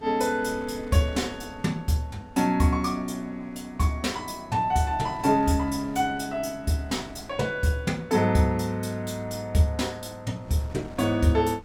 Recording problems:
wind noise; below 480 Hz, SNR 21 dB

